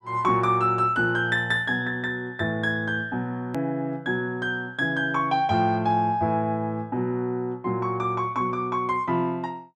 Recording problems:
click at an edit; at 3.5 s

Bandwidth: 14.5 kHz